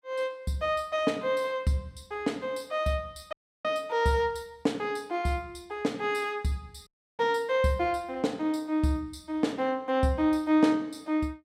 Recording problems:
audio cutting out; at 3.5 s and at 7 s

